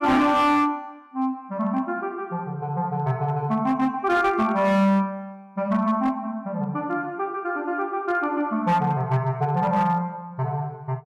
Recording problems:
distortion; hard clipping, signal-to-distortion ratio 11 dB

